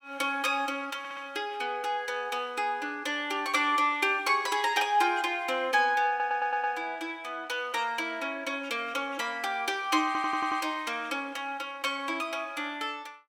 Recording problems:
audio stuttering; at 1 s, at 6 s and at 10 s

